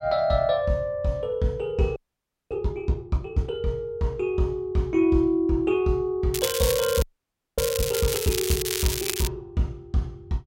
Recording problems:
frozen audio; at 2 s for 0.5 s and at 7 s for 0.5 s
crackle; from 6.5 to 9.5 s; loose cable, SNR 3 dB

